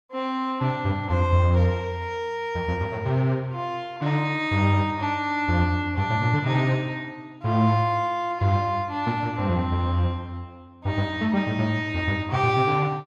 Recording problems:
none

